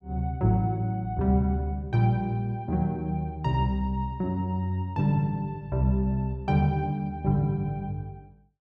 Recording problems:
none

